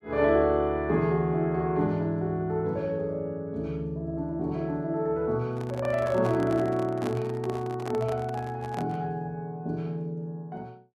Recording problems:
handling noise; from 5.5 to 9 s; peak -3 dB vs average level

